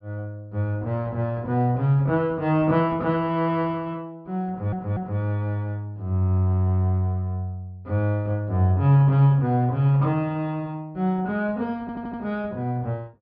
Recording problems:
low-pass filter; nothing above 5.5 kHz
stutter; at 4.5 s and at 12 s

